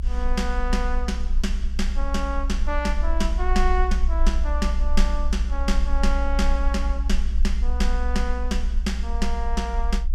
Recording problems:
rumble; below 56 Hz, strongest tone 20 Hz, SNR -3 dB

